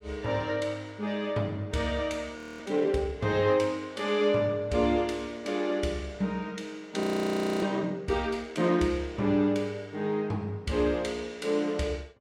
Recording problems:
frozen audio; at 2.5 s and at 7 s for 0.5 s

